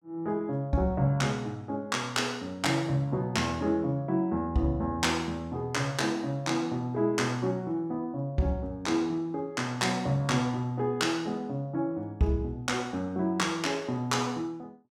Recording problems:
none

